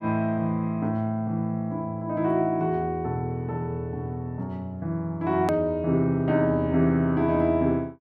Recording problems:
click at an edit; at 5.5 s

